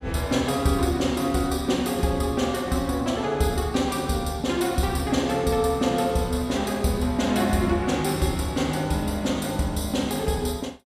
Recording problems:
none

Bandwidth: 14.5 kHz